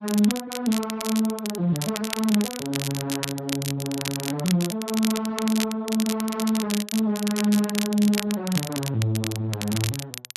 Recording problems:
lossy compression; Speex, log-spectral distance 2 dB
crackling; vinyl, SNR 7 dB

